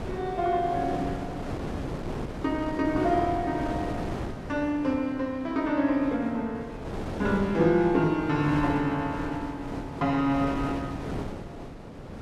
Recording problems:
wind noise; below 580 Hz, SNR 8 dB

